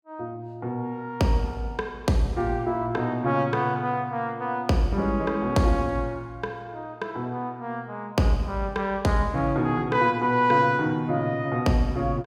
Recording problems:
none

